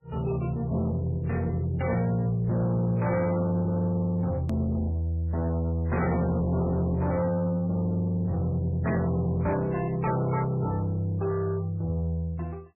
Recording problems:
codec artefacts; MP3, then MP3, log-spectral distance 2 dB, nothing above 13.1 kHz
distorted audio; soft clipping, signal-to-distortion ratio 11 dB
click at an edit; at 4.5 s

